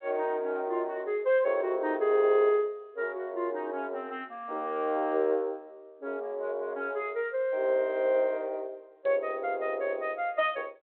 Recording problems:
phone line; 280 Hz to 3.7 kHz, G.726

